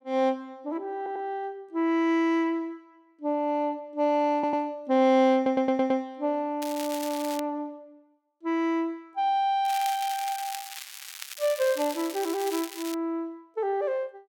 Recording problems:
audio stuttering; at 1 s, at 4.5 s and at 5.5 s
crackle; at 6.5 s and from 9.5 to 13 s; loose cable, SNR 11 dB

